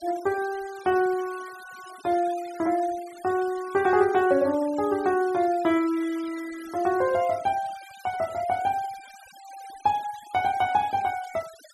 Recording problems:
noise reduction artefacts; signal-to-artefact ratio 20 dB

